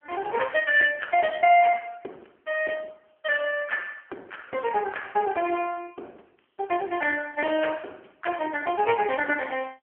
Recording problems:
telephone audio; 280 Hz to 3.1 kHz, AMR-NB

